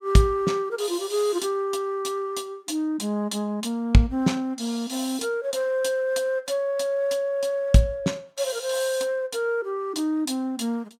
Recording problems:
none

